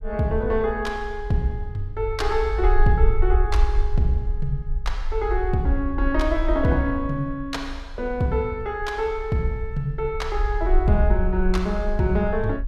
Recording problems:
rumble; below 50 Hz, SNR 3 dB

